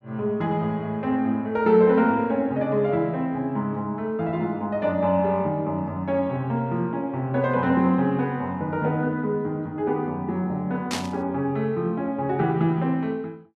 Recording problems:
burst of static; at 11 s; peak -1 dB vs average level

